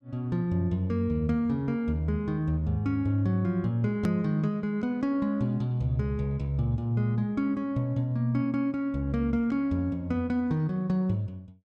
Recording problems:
hard cut with a click; at 4 s

